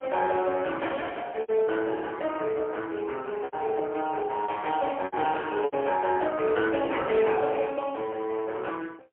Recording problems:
phone line; 320 Hz to 3.4 kHz, AMR-NB, then MP3
packet loss; 4% of the sound replaced, filled with repeated pitch periods

